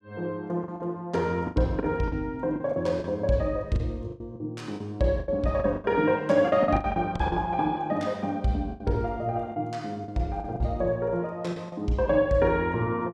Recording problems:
packet loss; 10% of the sound replaced, filled with the last packet

